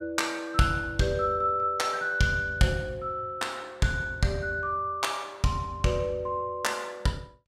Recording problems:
none

